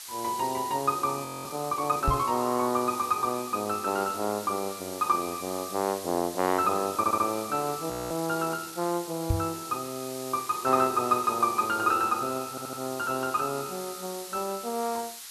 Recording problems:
hiss; slope +4 dB per octave, SNR 11 dB
audio freezing; at 1.5 s and at 8 s
knock on the microphone; at 2 s and at 9.5 s; peak +5 dB vs average level
stutter; at 7 s and at 13 s

